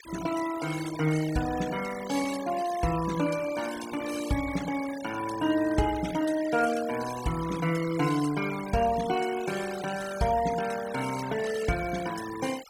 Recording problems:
denoising artefacts; signal-to-artefact ratio 13 dB

